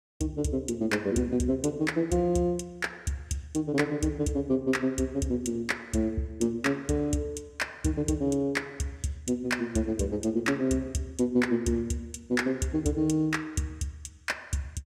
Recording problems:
none

